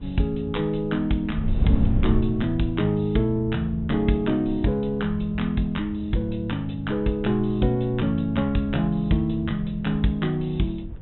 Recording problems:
treble missing; nothing above 3.8 kHz
wind noise; below 100 Hz, SNR 10 dB

